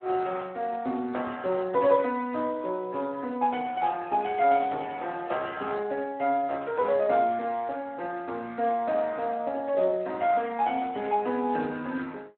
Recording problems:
phone line; 220 Hz to 3.5 kHz, Speex

